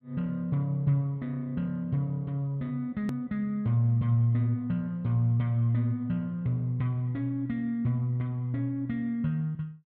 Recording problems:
hard cut with a click; at 3 s

